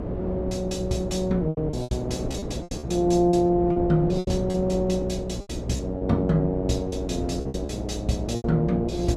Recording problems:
hum; 60 Hz, harmonics up to 660 Hz, SNR 10 dB
wind noise; below 450 Hz, SNR 9 dB
lost packets; 9% of the sound replaced, filled with repeated pitch periods

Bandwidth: 15 kHz